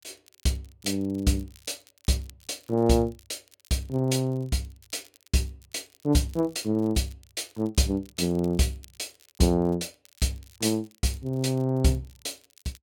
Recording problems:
crackling; vinyl, SNR 28 dB

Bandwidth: 18 kHz